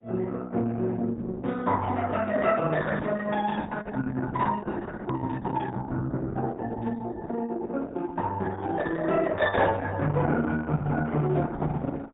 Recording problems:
treble missing; nothing above 3.7 kHz
lossy compression; Opus, log-spectral distance 3 dB
hard cut with a click; at 5 s

